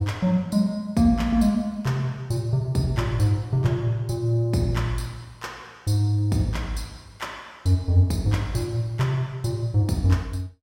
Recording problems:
none

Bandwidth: 16.5 kHz